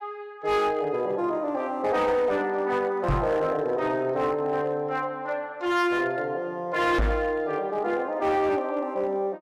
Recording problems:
distortion; hard clipping, signal-to-distortion ratio 10 dB
knock on the microphone; at 3 s and at 7 s; peak +3 dB vs average level

